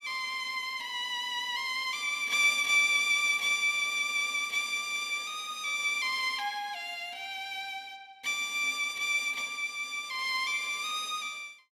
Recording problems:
none

